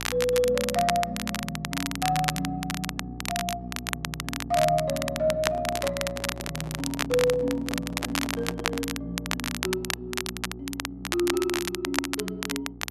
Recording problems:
hum; 60 Hz, harmonics up to 840 Hz, SNR 12 dB
crackle; vinyl, SNR 3 dB
microphone handling noise; from 5.5 to 9 s; peak -2 dB vs average level

